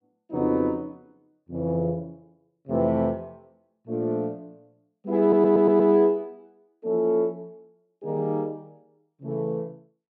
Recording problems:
audio stuttering; at 5 s

